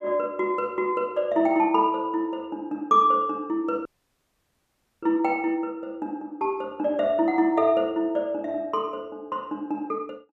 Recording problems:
dropout; at 4 s for 1 s

